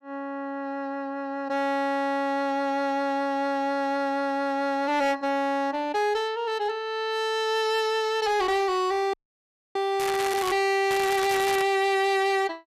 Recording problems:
distortion; hard clipping, signal-to-distortion ratio 7 dB
audio freezing; at 9 s for 0.5 s
crackling; at 10 s and at 11 s; loose cable, SNR 8 dB

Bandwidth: 14.5 kHz